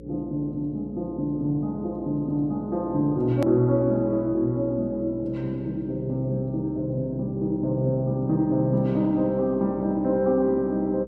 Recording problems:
hum; 60 Hz, harmonics up to 540 Hz, SNR 19 dB
hard cut with a click; at 3.5 s

